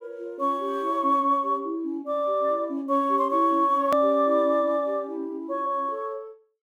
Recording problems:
hard cut with a click; at 4 s

